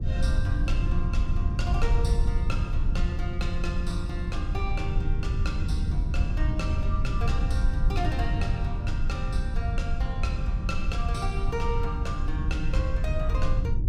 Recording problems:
low-frequency rumble; below 84 Hz, SNR -7 dB

